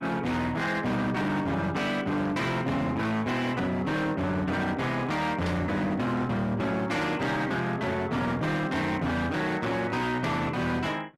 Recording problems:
lossy compression; Opus, log-spectral distance 2 dB, nothing above 13.1 kHz
distortion; hard clipping, signal-to-distortion ratio 8 dB
burst of static; at 5.5 s; peak -9 dB vs average level

